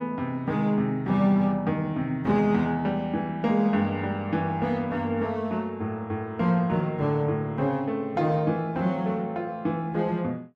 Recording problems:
none

